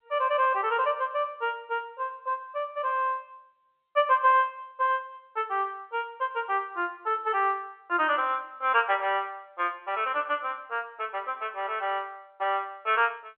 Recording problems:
phone line; 280 Hz to 3.5 kHz, G.711

